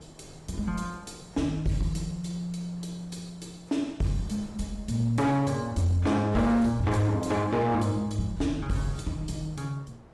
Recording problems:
lossy codec; AAC, log-spectral distance 2 dB, nothing above 11.3 kHz
distorted audio; hard clipping, signal-to-distortion ratio 12 dB
wind noise; below 680 Hz, SNR 22 dB

